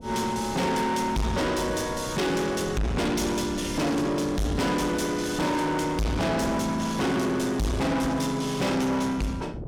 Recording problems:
distortion; soft clipping, signal-to-distortion ratio 6 dB
wind on the microphone; below 370 Hz, SNR 14 dB

